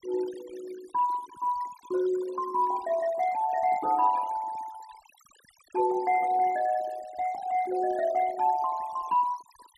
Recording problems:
noise reduction artefacts; signal-to-artefact ratio 19 dB

